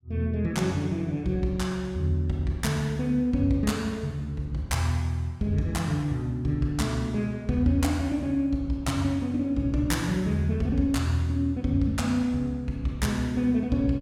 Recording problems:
none

